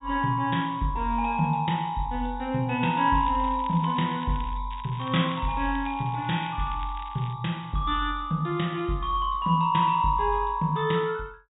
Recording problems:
treble cut off; nothing above 4 kHz
crackle; from 3 to 4.5 s and from 4.5 to 7.5 s; loose cable, SNR 21 dB

